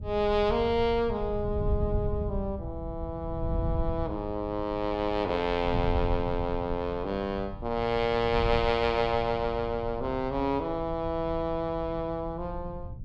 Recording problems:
wind noise; below 110 Hz, SNR 8 dB

